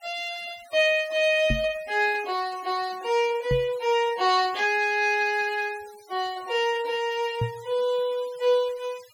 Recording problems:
denoising artefacts; signal-to-artefact ratio 22 dB
microphone thump; at 1.5 s, at 3.5 s and at 7.5 s; peak +1 dB vs average level

